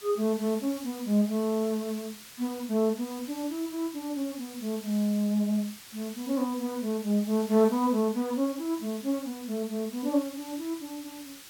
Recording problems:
background hiss; slope +2 dB per octave, SNR 15 dB

